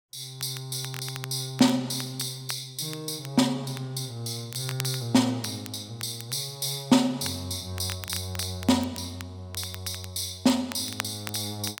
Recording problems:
crackle; vinyl, SNR 14 dB

